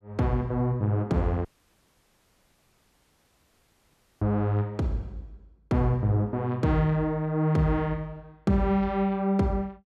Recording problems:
audio cutting out; at 1.5 s for 3 s

